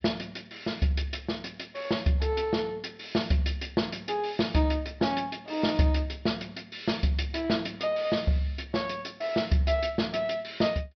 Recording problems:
treble missing; nothing above 5.5 kHz

